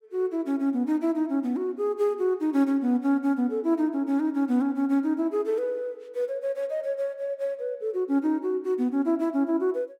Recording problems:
none

